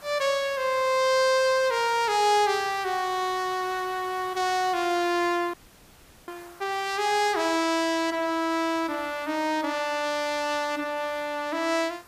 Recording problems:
hiss; SNR 22 dB
dropout; at 5.5 s for 0.5 s

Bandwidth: 15 kHz